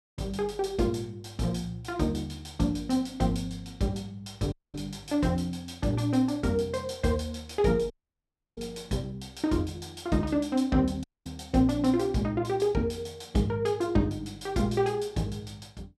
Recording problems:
audio cutting out; at 4.5 s, at 8 s for 0.5 s and at 11 s

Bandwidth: 15 kHz